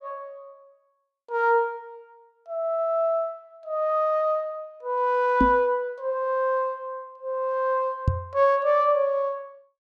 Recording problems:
microphone thump; at 5.5 s and at 8 s; peak +6 dB vs average level

